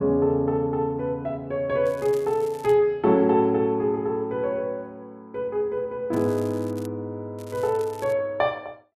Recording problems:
crackling; at 2 s, at 6 s and at 7.5 s; loose cable, SNR 24 dB

